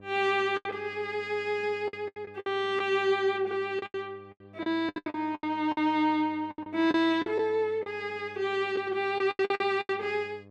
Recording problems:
mains hum; 50 Hz, harmonics up to 1.2 kHz, SNR 24 dB
lost packets; 13% of the sound replaced, filled with the last packet

